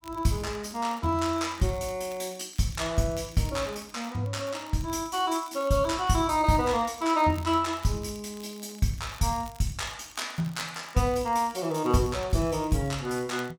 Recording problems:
crackling; vinyl, SNR 23 dB

